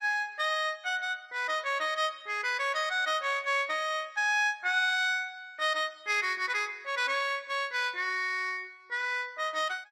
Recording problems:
lossy codec; Opus, log-spectral distance 3 dB, nothing above 14.7 kHz

